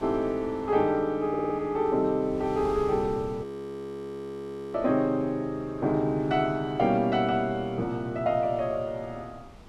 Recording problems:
wind on the microphone; below 620 Hz, SNR 20 dB
stutter; at 1.5 s
audio freezing; at 3.5 s for 1.5 s

